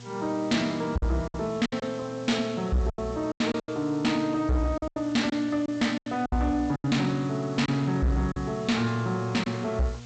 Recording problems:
codec artefacts; G.722, log-spectral distance 4 dB, nothing above 8 kHz
distorted audio; soft clipping, signal-to-distortion ratio 10 dB
mains hum; 60 Hz, harmonics up to 960 Hz, SNR 18 dB
hiss; slope +3 dB per octave, SNR 22 dB
packet loss; 9% of the sound replaced, filled with silence

